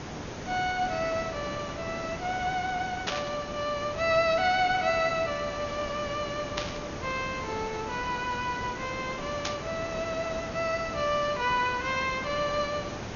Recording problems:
treble cut off; nothing above 6.8 kHz
background hiss; slope -5 dB per octave, SNR 8 dB
burst of static; at 3 s, at 6.5 s and at 9.5 s; peak +4 dB vs average level

